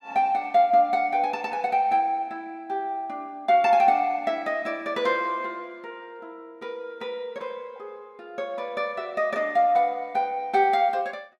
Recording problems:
none

